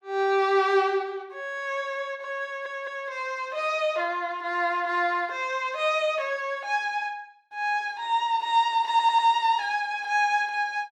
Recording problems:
stutter; at 2.5 s and at 9 s

